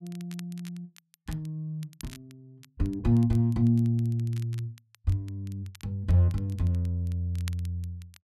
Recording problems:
crackle; vinyl, SNR 24 dB

